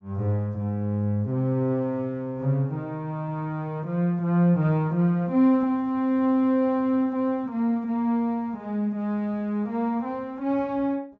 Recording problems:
treble missing; nothing above 8 kHz

